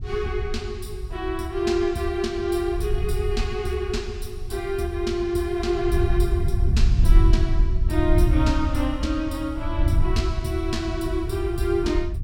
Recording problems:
wind noise; below 82 Hz, SNR 0 dB

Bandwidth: 16.5 kHz